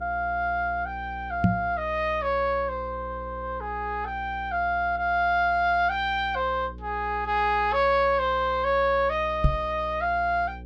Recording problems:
hum; 60 Hz, harmonics up to 540 Hz, SNR 16 dB
knock on the microphone; at 1.5 s and at 9.5 s; peak +8 dB vs average level

